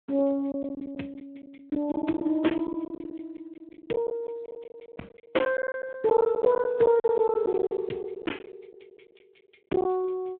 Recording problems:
telephone audio; 220 Hz to 3.2 kHz, Speex
packet loss; 13% of the sound replaced, filled with silence

